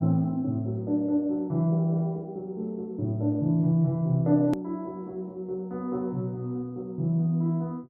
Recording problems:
edit click; at 4.5 s

